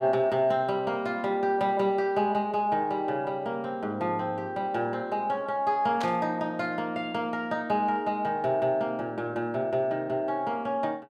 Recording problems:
burst of static; at 6 s; peak -5 dB vs average level

